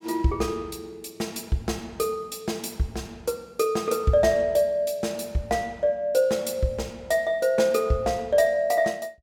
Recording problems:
none

